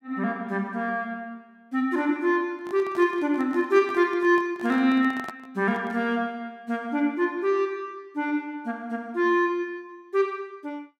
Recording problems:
handling noise; from 2.5 to 6 s; peak -8 dB vs average level

